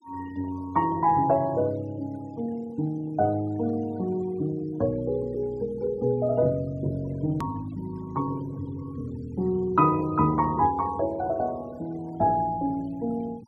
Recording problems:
noise reduction artefacts; signal-to-artefact ratio 25 dB
edit click; at 7.5 s

